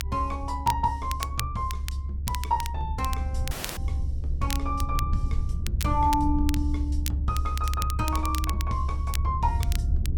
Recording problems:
rumble; below 72 Hz, strongest tone 68 Hz, SNR 0 dB
crackling; vinyl, SNR 9 dB
dropout; at 3.5 s

